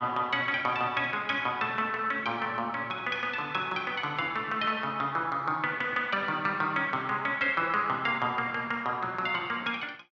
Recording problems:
none

